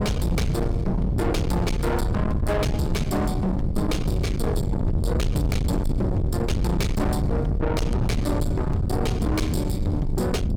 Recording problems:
distorted audio; soft clipping, signal-to-distortion ratio 7 dB
low-frequency rumble; below 210 Hz, SNR 0 dB

